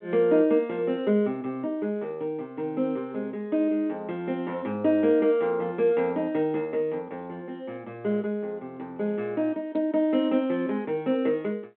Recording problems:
phone line; 220 Hz to 3.7 kHz, G.726

